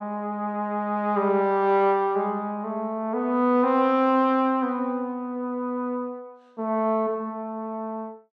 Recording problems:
none

